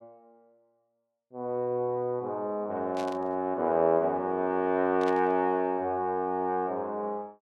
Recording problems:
burst of static; at 3 s and at 5 s; peak -10 dB vs average level

